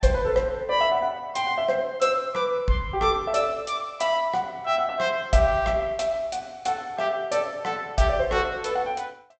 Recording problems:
treble cut off; nothing above 8 kHz

